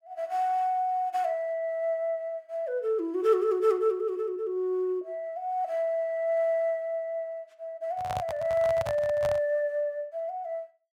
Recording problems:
handling noise; from 8 to 9.5 s; peak -2 dB vs average level

